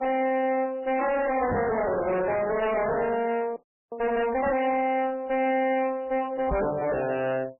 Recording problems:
lossy compression; MP3, then MP3, log-spectral distance 3 dB, nothing above 2.4 kHz
distortion; hard clipping, uneven, signal-to-distortion ratio 6 dB
microphone bump; at 1.5 s, at 4.5 s and at 6.5 s; peak 0 dB vs average level
audio freezing; at 3.5 s

